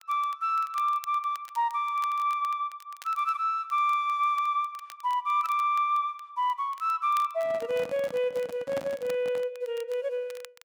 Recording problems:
crackle; vinyl, SNR 24 dB
microphone handling noise; from 7.5 to 9.5 s; peak -5 dB vs average level

